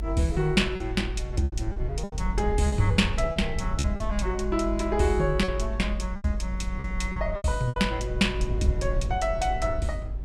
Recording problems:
rumble; below 64 Hz, strongest tone 50 Hz, SNR 4 dB
packet loss; 8% of the sound replaced, filled with repeated pitch periods

